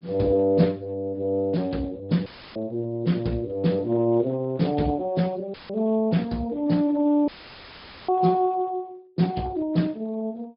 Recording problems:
treble cut off; nothing above 5.2 kHz
codec artefacts; Speex, log-spectral distance 2 dB
dropout; at 2.5 s, at 5.5 s and at 7.5 s for 1 s; filled with static

